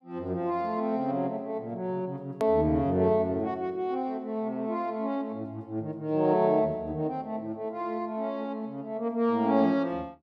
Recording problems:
edit click; at 2.5 s

